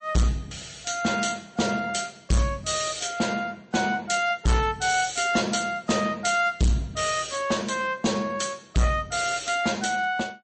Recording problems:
codec artefacts; MP3, log-spectral distance 6 dB, nothing above 8.2 kHz
distorted audio; hard clipping, signal-to-distortion ratio 7 dB

